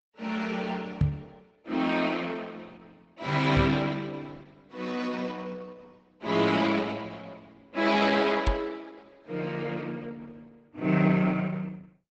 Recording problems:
lossy compression; Opus, log-spectral distance 4 dB, nothing above 7.8 kHz
microphone thump; at 1 s, at 3.5 s and at 8.5 s; peak +7 dB vs average level

